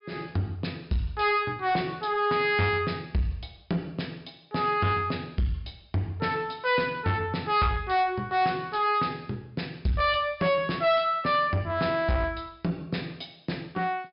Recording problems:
low-pass filter; nothing above 5.5 kHz
distortion; soft clipping, signal-to-distortion ratio 7 dB

